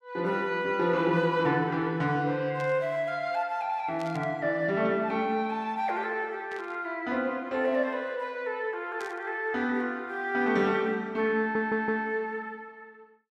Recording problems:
burst of static; 4 times, first at 2.5 s; peak -13 dB vs average level
stutter; at 11 s

